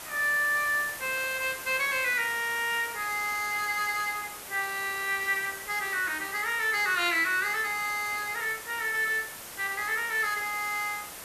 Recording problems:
background hiss; slope -2 dB per octave, SNR 11 dB

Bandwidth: 14 kHz